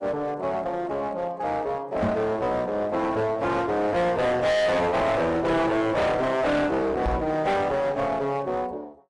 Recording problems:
codec artefacts; AAC, log-spectral distance 2 dB, nothing above 10.4 kHz
distortion; hard clipping, uneven, signal-to-distortion ratio 5 dB
microphone bump; at 2 s and at 7 s; peak +3 dB vs average level

